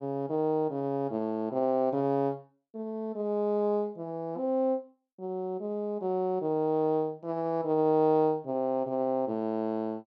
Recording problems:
none

